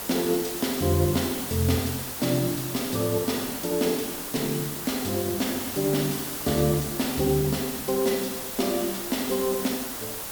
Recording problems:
hiss; slope -2 dB per octave, SNR 5 dB

